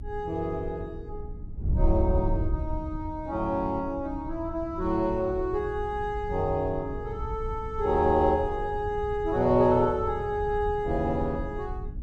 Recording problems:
hum; 60 Hz, harmonics up to 300 Hz, SNR 20 dB
wind on the microphone; below 90 Hz, SNR 8 dB

